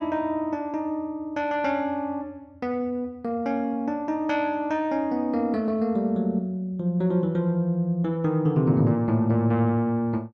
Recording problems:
none

